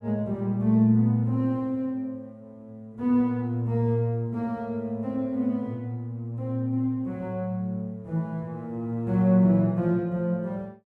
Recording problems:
none

